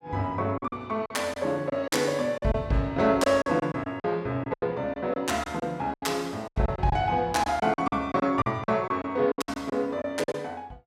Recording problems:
lost packets; 12% of the sound replaced, filled with silence

